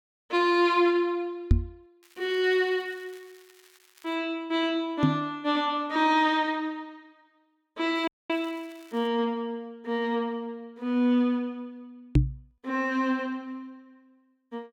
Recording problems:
knock on the microphone; at 1.5 s, at 5 s and at 12 s; peak +10 dB vs average level
crackle; from 2 to 4 s and from 8 to 9 s; loose cable, SNR 29 dB
audio cutting out; at 8 s

